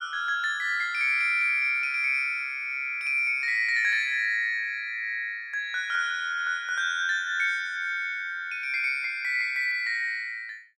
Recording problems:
none

